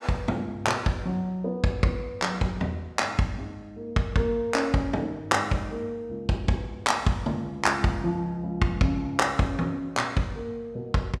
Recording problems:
none

